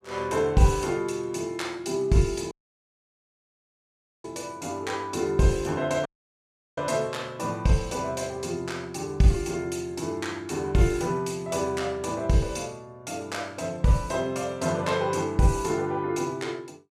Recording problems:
dropout; at 2.5 s for 1.5 s and at 6 s for 0.5 s

